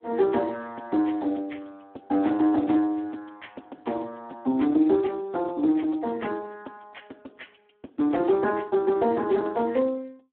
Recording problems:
telephone audio; 220 Hz to 3.7 kHz, Speex

